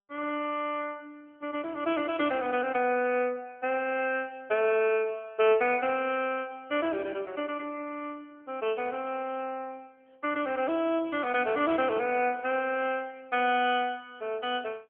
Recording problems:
telephone audio; 260 Hz to 3.3 kHz, AMR-NB

